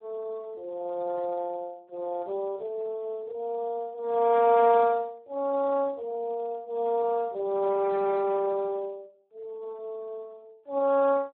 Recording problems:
phone line; 300 Hz to 2.1 kHz, Speex

